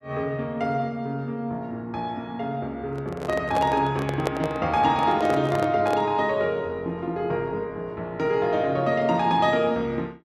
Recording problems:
handling noise; from 3 to 6 s; peak +2 dB vs average level

